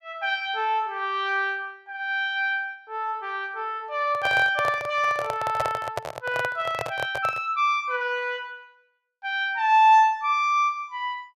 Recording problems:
microphone handling noise; from 4 to 7.5 s; peak 0 dB vs average level

